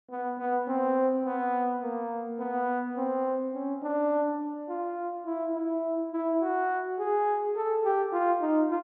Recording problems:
none

